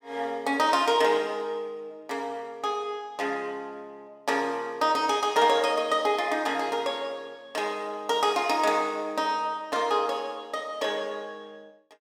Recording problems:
none

